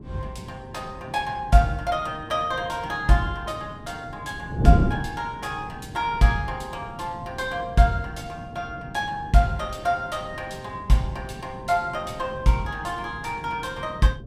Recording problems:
wind on the microphone; below 240 Hz, SNR 9 dB

